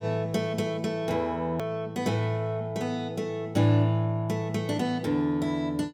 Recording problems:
edit click; at 1.5 s

